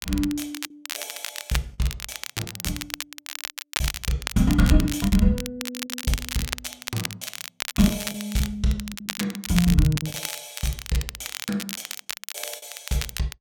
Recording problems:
crackle; vinyl, SNR 6 dB
packet loss; 8% of the sound replaced, filled with the last packet

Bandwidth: 17 kHz